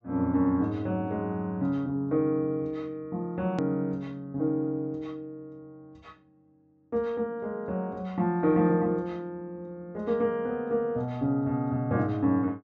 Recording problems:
treble cut off; nothing above 8 kHz
click at an edit; at 3.5 s

